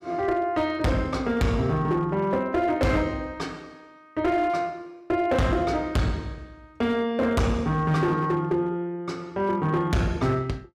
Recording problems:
distorted audio; hard clipping, uneven, signal-to-distortion ratio 7 dB

